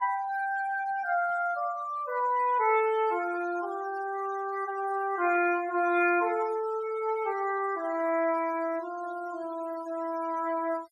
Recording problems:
denoising artefacts; signal-to-artefact ratio 20 dB

